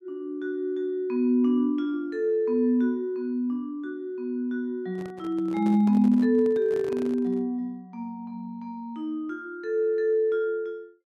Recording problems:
microphone handling noise; from 5 to 7.5 s; peak -10 dB vs average level

